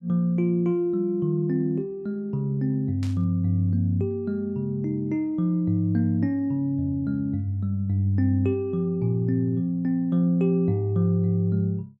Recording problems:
static burst; at 3 s; peak -14 dB vs average level

